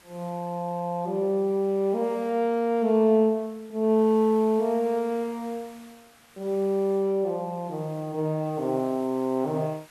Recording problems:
background hiss; slope -1 dB per octave, SNR 27 dB

